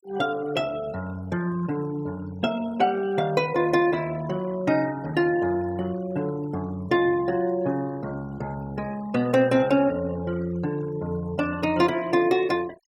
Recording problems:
noise reduction artefacts; signal-to-artefact ratio 21 dB

